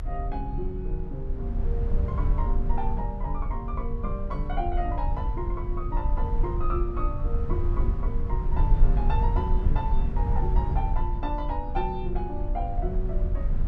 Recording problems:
low-frequency rumble; below 62 Hz, SNR -5 dB

